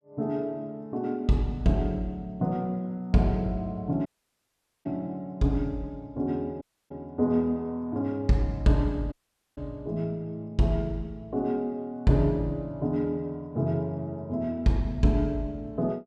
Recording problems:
dropout; at 4 s for 1 s, at 6.5 s and at 9 s

